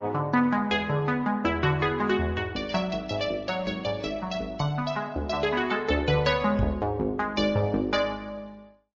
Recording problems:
codec artefacts; Opus, then MP3, log-spectral distance 2 dB, nothing above 6 kHz
microphone thump; at 6.5 s; peak +1 dB vs average level

